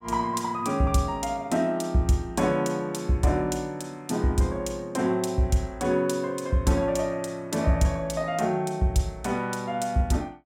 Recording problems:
none

